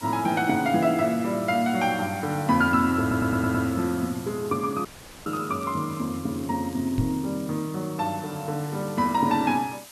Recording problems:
background hiss; slope +1 dB per octave, SNR 18 dB
stutter; at 3 s
audio cutting out; at 5 s
crackle; from 5.5 to 7.5 s; loose cable, SNR 29 dB
knock on the microphone; at 7 s; peak +3 dB vs average level

